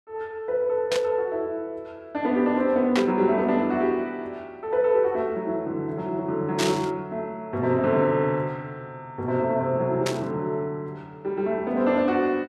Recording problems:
static burst; 4 times, first at 1 s; peak +2 dB vs average level

